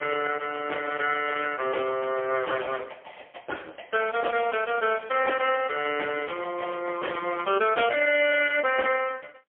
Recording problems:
telephone audio; 320 Hz to 3.2 kHz, AMR-NB, then MP3

